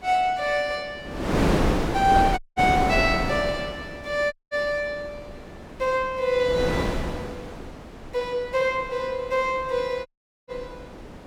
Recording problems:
wind noise; below 690 Hz, SNR 2 dB
dropout; at 2.5 s, at 4.5 s and at 10 s

